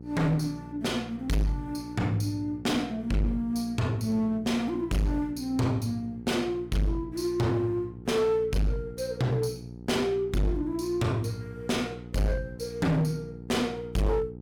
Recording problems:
distorted audio; hard clipping, uneven, signal-to-distortion ratio 6 dB
electrical hum; 60 Hz, harmonics up to 540 Hz, SNR 14 dB

